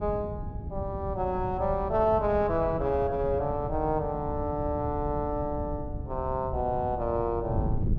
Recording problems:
wind noise; below 150 Hz, SNR 7 dB

